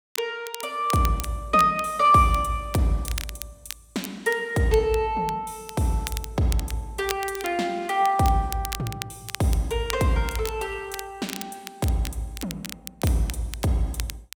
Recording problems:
crackle; vinyl, SNR 13 dB

